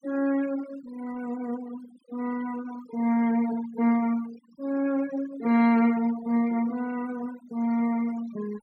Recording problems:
denoising artefacts; signal-to-artefact ratio 19 dB

